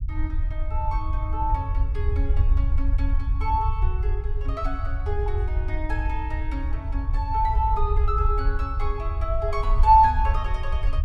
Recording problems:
rumble; below 68 Hz, SNR 0 dB

